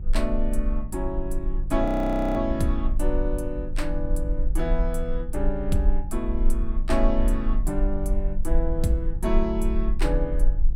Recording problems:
hum; 50 Hz, harmonics up to 500 Hz, SNR 10 dB
rumble; below 40 Hz, strongest tone 20 Hz, SNR 0 dB
frozen audio; at 2 s for 0.5 s

